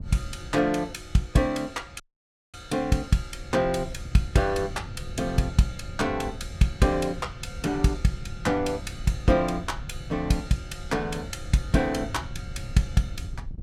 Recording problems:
wind on the microphone; below 120 Hz, SNR 13 dB
audio cutting out; at 2 s for 0.5 s

